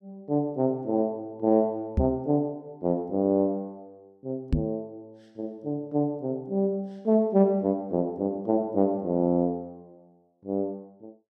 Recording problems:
knock on the microphone; at 2 s and at 4.5 s; peak +6 dB vs average level

